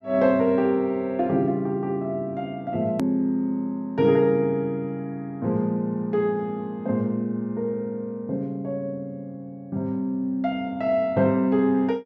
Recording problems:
edit click; at 3 s

